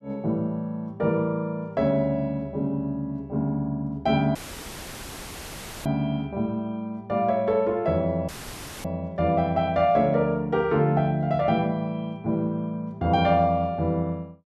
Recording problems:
dropout; at 4.5 s for 1.5 s and at 8.5 s for 0.5 s; filled with static

